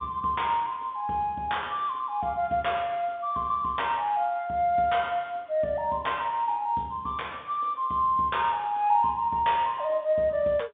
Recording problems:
telephone audio; 170 Hz to 3.6 kHz, G.711

